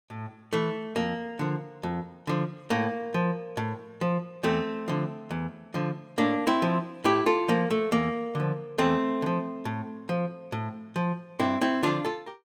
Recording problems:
none

